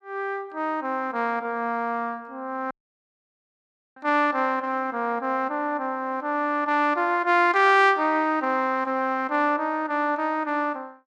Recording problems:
dropout; at 2.5 s for 1.5 s

